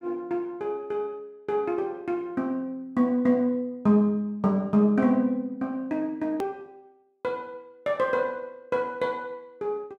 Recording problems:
edit click; at 6.5 s

